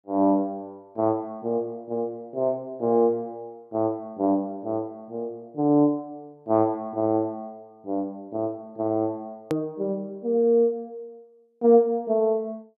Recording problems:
edit click; at 9.5 s

